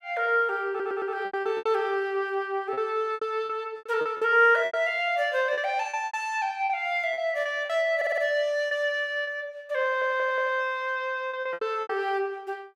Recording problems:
lost packets; 11% of the sound replaced, filled with repeated pitch periods
audio stuttering; at 0.5 s, at 8 s and at 10 s

